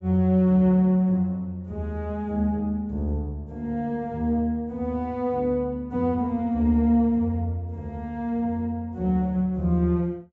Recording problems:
treble cut off; nothing above 8 kHz

